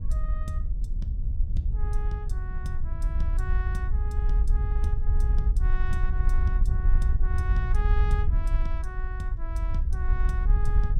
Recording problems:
low-frequency rumble; below 86 Hz, SNR 4 dB
wind noise; below 56 Hz, SNR -11 dB

